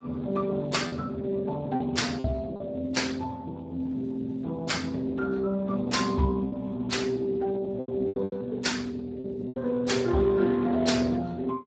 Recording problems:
lossy codec; Speex, log-spectral distance 3 dB, nothing above 7.6 kHz
packet loss; 5% of the sound replaced, filled with repeated pitch periods

